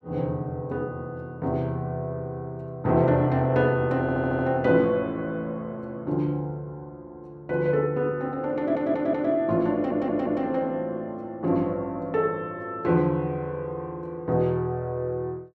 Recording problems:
stutter; at 4 s, at 8.5 s and at 9.5 s

